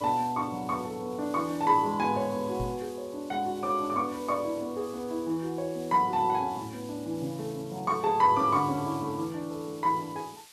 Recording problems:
background hiss; slope +3 dB per octave, SNR 21 dB
microphone thump; at 2.5 s; peak -3 dB vs average level

